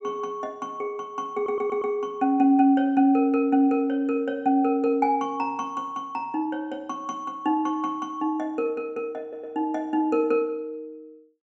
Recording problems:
stutter; at 1.5 s and at 9 s

